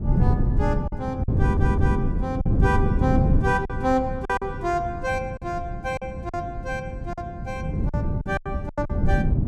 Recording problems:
wind on the microphone; below 180 Hz, SNR -2 dB
lost packets; 8% of the sound replaced, filled with silence
audio stuttering; at 1.5 s

